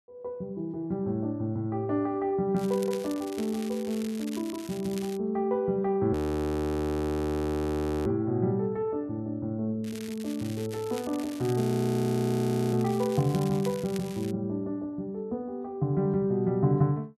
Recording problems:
crackling; from 2.5 to 5 s and from 10 to 14 s; loose cable, SNR 16 dB
frozen audio; at 6 s for 2 s and at 12 s for 1 s

